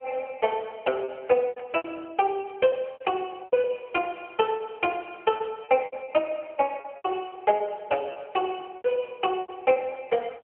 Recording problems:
telephone audio; 320 Hz to 3 kHz, AMR-NB
packet loss; 12% of the sound replaced, filled with repeated pitch periods
burst of static; at 1.5 s, at 3 s and at 4.5 s; peak -14 dB vs average level

